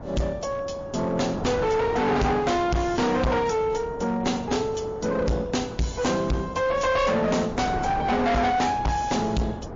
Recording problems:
codec artefacts; MP3, log-spectral distance 4 dB, nothing above 6.9 kHz
distorted audio; hard clipping, uneven, signal-to-distortion ratio 5 dB
wind noise; below 720 Hz, SNR 12 dB

